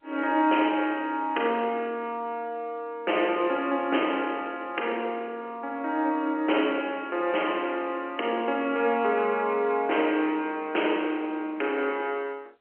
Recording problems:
telephone audio; 280 Hz to 3.1 kHz, G.711

